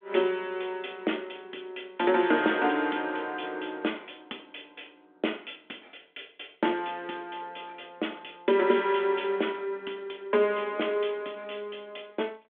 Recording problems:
phone line; 240 Hz to 3.5 kHz, G.726

